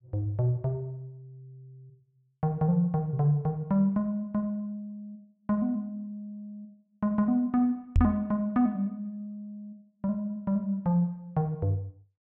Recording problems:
knock on the microphone; at 8 s; peak +8 dB vs average level

